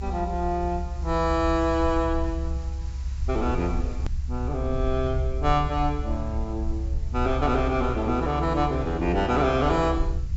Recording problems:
treble missing; nothing above 8 kHz
background hiss; SNR 27 dB
rumble; below 68 Hz, SNR 5 dB
hard cut with a click; at 4 s

